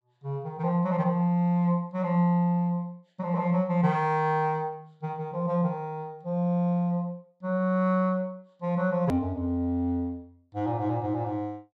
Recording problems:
edit click; at 9 s

